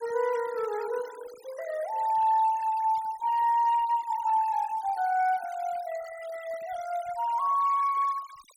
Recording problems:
noise reduction artefacts; signal-to-artefact ratio 21 dB

